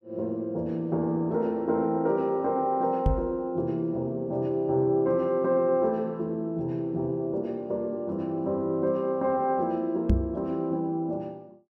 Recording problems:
microphone bump; at 3 s and at 10 s; peak +7 dB vs average level

